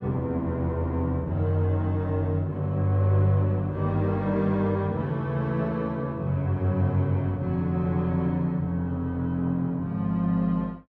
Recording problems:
none

